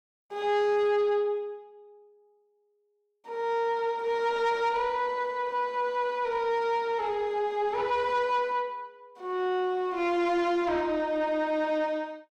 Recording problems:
distortion; soft clipping, signal-to-distortion ratio 10 dB

